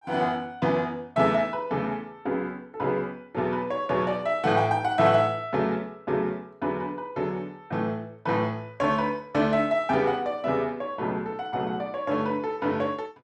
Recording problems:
none

